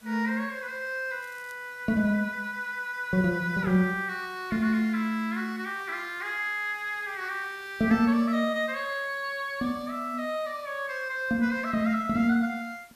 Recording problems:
hiss; slope -1 dB per octave, SNR 26 dB
crackling; at 1 s; loose cable, SNR 28 dB

